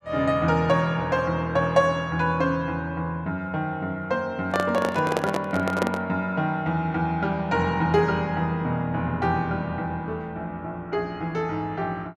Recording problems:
handling noise; from 4.5 to 6 s; peak +3 dB vs average level

